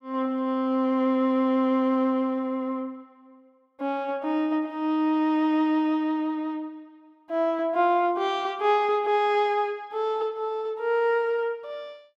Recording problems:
none

